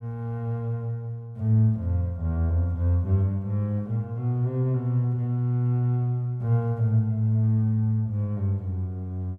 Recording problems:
none

